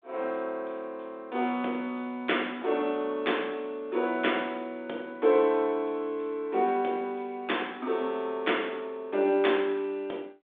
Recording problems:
phone line; 260 Hz to 3.6 kHz, G.726

